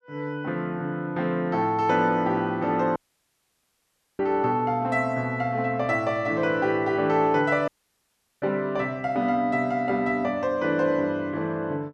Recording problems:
audio cutting out; at 3 s for 1 s and at 7.5 s for 0.5 s

